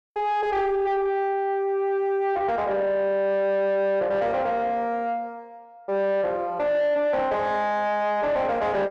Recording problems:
distorted audio; soft clipping, signal-to-distortion ratio 10 dB

